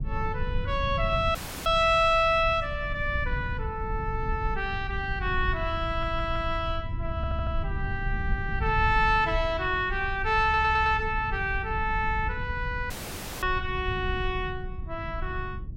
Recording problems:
rumble; below 98 Hz, SNR 7 dB
audio cutting out; at 1.5 s and at 13 s for 0.5 s
audio stuttering; at 6 s, at 7 s and at 10 s

